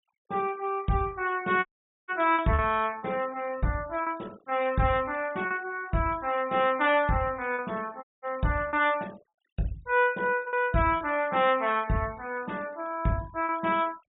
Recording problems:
low-pass filter; nothing above 4 kHz
noise reduction artefacts; signal-to-artefact ratio 24 dB
lost packets; 4% of the sound replaced, filled with repeated pitch periods
dropout; at 1.5 s and at 8 s

